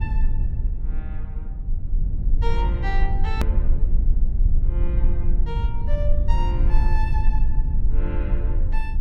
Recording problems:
low-frequency rumble; below 50 Hz, strongest tone 22 Hz, SNR -10 dB
click at an edit; at 3.5 s

